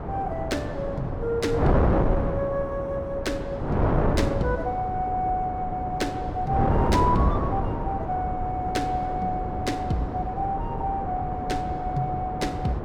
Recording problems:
wind noise; below 530 Hz, SNR 0 dB

